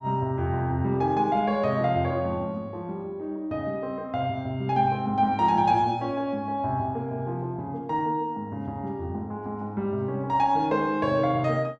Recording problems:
none

